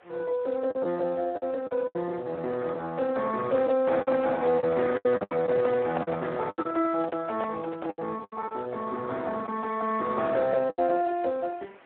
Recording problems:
telephone audio; 220 Hz to 2.4 kHz, Speex
background hiss; SNR 27 dB
lost packets; 9% of the sound replaced, filled with the last packet
microphone handling noise; from 4 to 8 s; peak 0 dB vs average level

